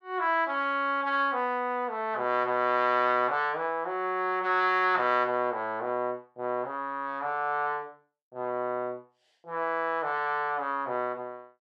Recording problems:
none

